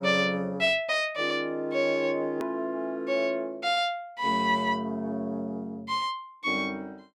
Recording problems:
edit click; at 2.5 s

